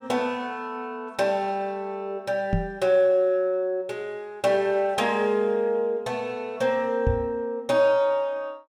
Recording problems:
microphone thump; at 2.5 s and at 7 s; peak +4 dB vs average level

